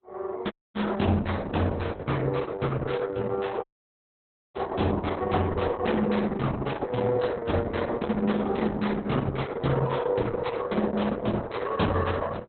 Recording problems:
lossy codec; Opus, log-spectral distance 4 dB, nothing above 4 kHz
audio cutting out; at 0.5 s and at 3.5 s for 1 s

